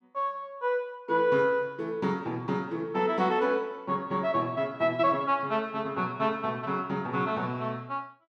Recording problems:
none

